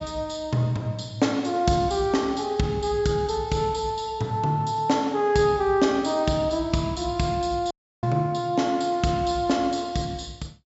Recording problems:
treble cut off; nothing above 8 kHz
dropout; at 7.5 s

